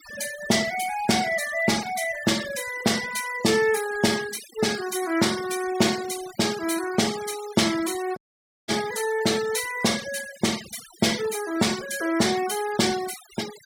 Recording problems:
noise reduction artefacts; signal-to-artefact ratio 12 dB
dropout; at 8 s for 0.5 s

